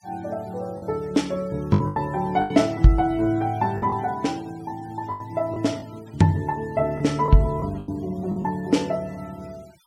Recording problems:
denoising artefacts; signal-to-artefact ratio 26 dB
packet loss; 7% of the sound replaced, filled with the last packet

